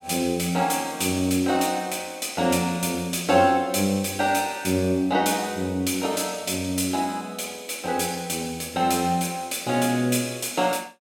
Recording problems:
none

